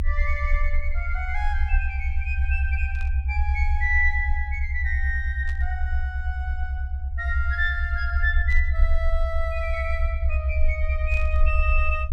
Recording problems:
low-frequency rumble; below 70 Hz, SNR -3 dB
burst of static; 4 times, first at 3 s; peak -13 dB vs average level

